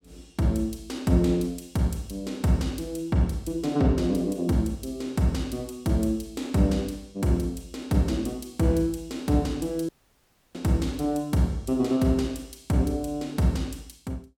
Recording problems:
dropout; at 10 s for 0.5 s

